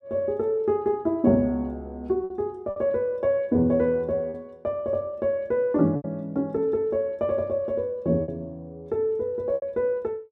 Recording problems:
packet loss; 4% of the sound replaced, filled with repeated pitch periods

